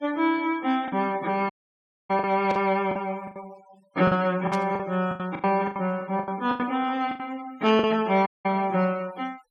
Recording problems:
noise reduction artefacts; signal-to-artefact ratio 24 dB
lost packets; 11% of the sound replaced, filled with the last packet
dropout; at 1.5 s for 0.5 s and at 8.5 s
burst of static; at 2.5 s, at 4.5 s and at 7.5 s; peak -9 dB vs average level

